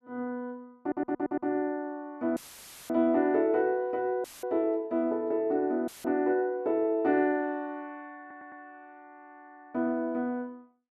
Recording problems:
audio stuttering; at 1 s and at 8 s
audio cutting out; at 2.5 s for 0.5 s, at 4 s and at 6 s; filled with static

